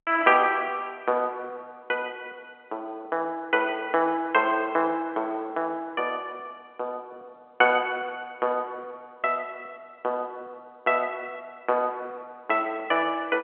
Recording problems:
telephone audio; 260 Hz to 3.3 kHz, G.711

